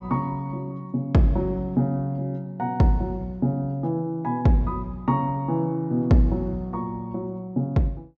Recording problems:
low-pass filter; nothing above 8 kHz

